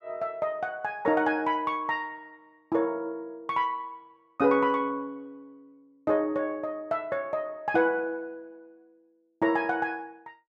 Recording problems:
none

